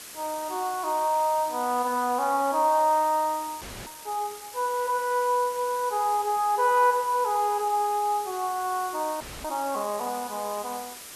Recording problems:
background hiss; slope 0 dB per octave, SNR 14 dB
frozen audio; at 3.5 s and at 9 s

